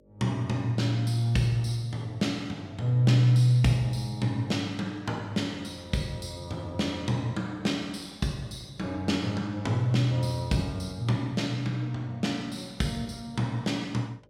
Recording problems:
electrical hum; 50 Hz, harmonics up to 600 Hz, SNR 31 dB

